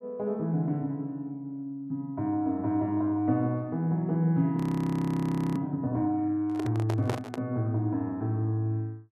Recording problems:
audio freezing; at 4.5 s for 1 s
microphone handling noise; at 6.5 s; peak 0 dB vs average level

